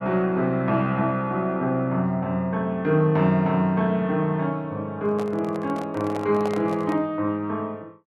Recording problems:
handling noise; from 5 to 7 s; peak -5 dB vs average level

